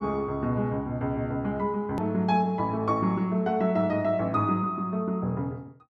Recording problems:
edit click; at 2 s

